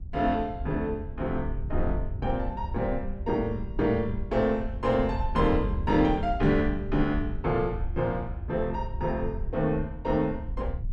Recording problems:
wind on the microphone; below 76 Hz, SNR 7 dB

